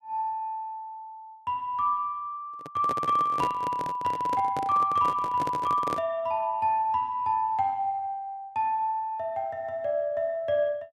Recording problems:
microphone handling noise; from 2.5 to 6 s; peak -1 dB vs average level

